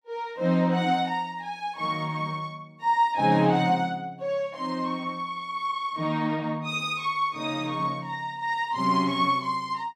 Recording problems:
none

